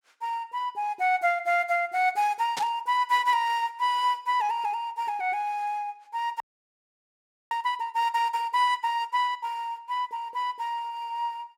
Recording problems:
burst of static; at 2.5 s; peak -2 dB vs average level
audio freezing; at 6.5 s for 1 s

